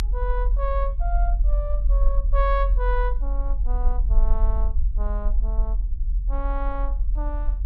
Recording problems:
low-frequency rumble; below 44 Hz, strongest tone 42 Hz, SNR -7 dB

